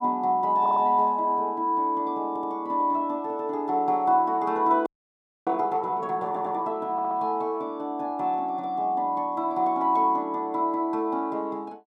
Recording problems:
audio stuttering; 4 times, first at 0.5 s
audio freezing; at 5 s for 0.5 s

